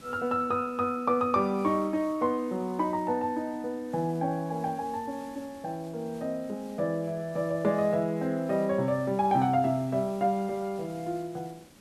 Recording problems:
hiss; SNR 23 dB

